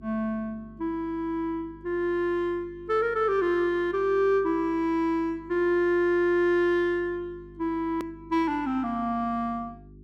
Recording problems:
mains hum; 50 Hz, harmonics up to 400 Hz, SNR 23 dB
click at an edit; at 8 s

